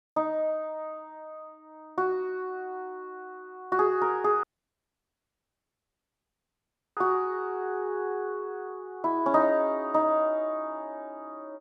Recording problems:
dropout; at 4.5 s for 2.5 s

